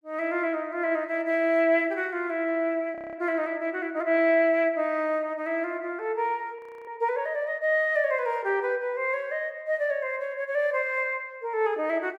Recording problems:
audio freezing; at 3 s and at 6.5 s

